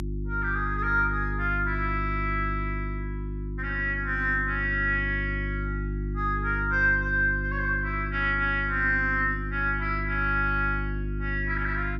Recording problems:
electrical hum; 50 Hz, harmonics up to 350 Hz, SNR 5 dB

